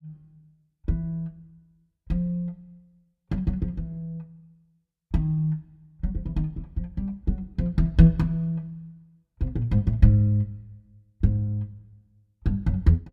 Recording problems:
none

